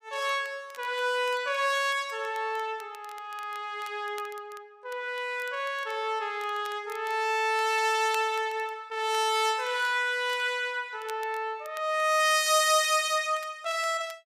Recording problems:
crackle; vinyl, SNR 24 dB

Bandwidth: 15 kHz